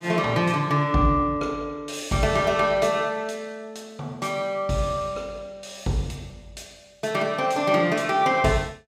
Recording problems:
none

